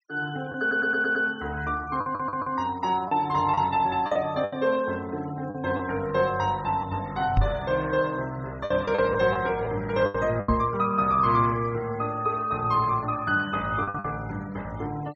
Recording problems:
treble missing; nothing above 8 kHz
noise reduction artefacts; signal-to-artefact ratio 22 dB
packet loss; 6% of the sound replaced, filled with the last packet
audio stuttering; at 0.5 s and at 2 s
microphone thump; at 7.5 s and at 10 s; peak +6 dB vs average level

